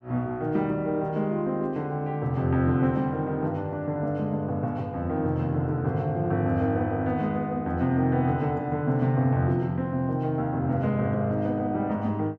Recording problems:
none

